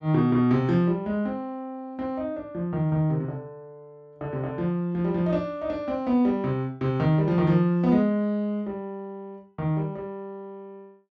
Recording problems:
none

